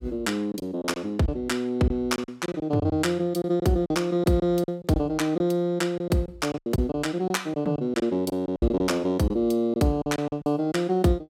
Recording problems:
packet loss; 10% of the sound replaced, filled with silence

